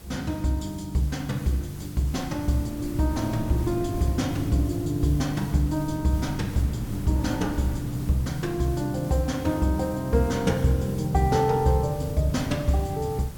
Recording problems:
hiss; slope -3 dB per octave, SNR 20 dB
wind noise; below 220 Hz, SNR 13 dB

